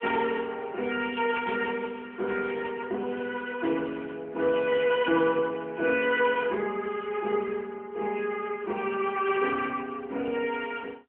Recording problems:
phone line; 220 Hz to 3.2 kHz, AMR-NB
crackle; at 1.5 s and from 3 to 4 s; loose cable, SNR 28 dB

